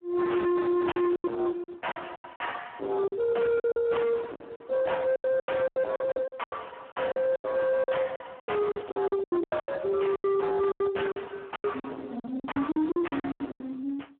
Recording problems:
telephone audio; 170 Hz to 3.2 kHz, Speex
distorted audio; soft clipping, signal-to-distortion ratio 7 dB
lost packets; 17% of the sound replaced, filled with silence

